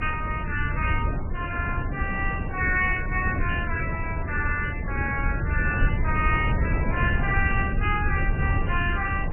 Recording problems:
lossy codec; MP3, then MP2, log-spectral distance 3 dB, nothing above 2.5 kHz
rumble; below 86 Hz, SNR 4 dB
wind noise; below 230 Hz, SNR 3 dB

